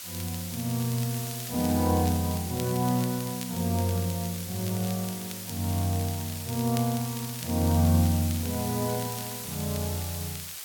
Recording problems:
background hiss; slope +3 dB per octave, SNR 7 dB
crackling; vinyl, SNR 16 dB

